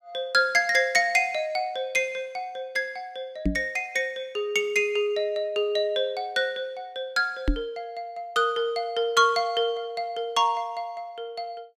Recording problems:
knock on the microphone; at 3.5 s and at 7.5 s; peak +4 dB vs average level

